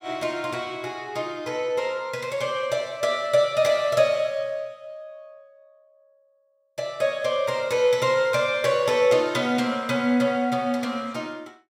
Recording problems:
none

